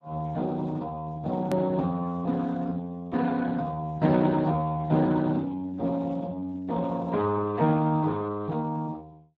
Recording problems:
codec artefacts; Speex, log-spectral distance 3 dB, nothing above 13.1 kHz
hard cut with a click; at 1.5 s

